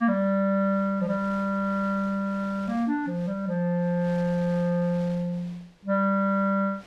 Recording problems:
wind noise; below 3.1 kHz, SNR 25 dB

